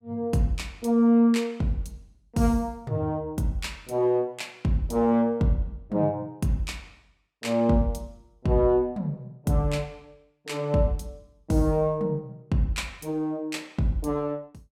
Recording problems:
none

